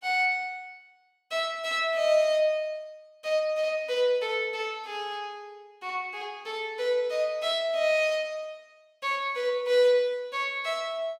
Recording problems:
none

